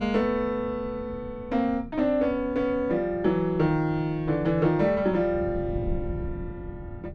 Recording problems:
wind on the microphone; below 170 Hz, SNR 14 dB

